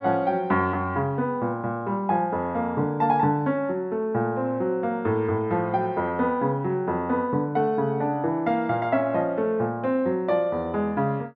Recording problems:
none

